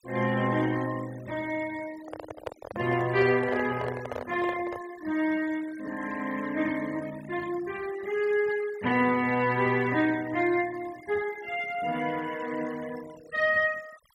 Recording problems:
noise reduction artefacts; signal-to-artefact ratio 19 dB
microphone handling noise; from 2 to 5 s; peak -2 dB vs average level

